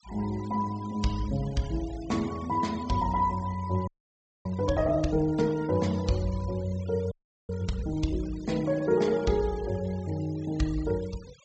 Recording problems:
treble cut off; nothing above 8 kHz
noise reduction artefacts; signal-to-artefact ratio 20 dB
audio freezing; at 4 s for 0.5 s and at 7 s

